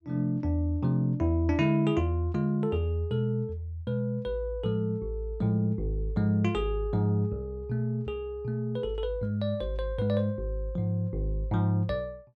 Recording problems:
none

